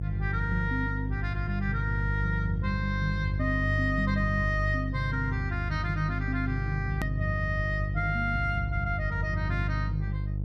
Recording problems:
hum; 50 Hz, harmonics up to 350 Hz, SNR 0 dB
hard cut with a click; at 7 s

